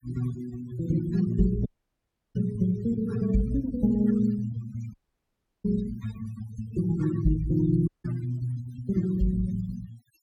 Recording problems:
noise reduction artefacts; signal-to-artefact ratio 17 dB
audio cutting out; at 1.5 s for 0.5 s, at 5 s for 0.5 s and at 8 s

